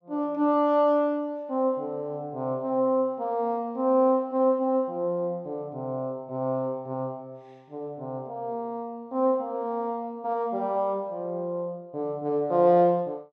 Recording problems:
none

